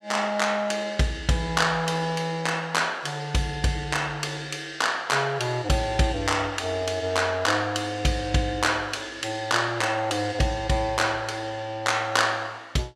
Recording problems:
none

